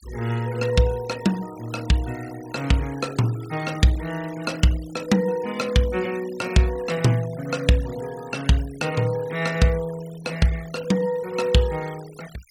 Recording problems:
noise reduction artefacts; signal-to-artefact ratio 19 dB

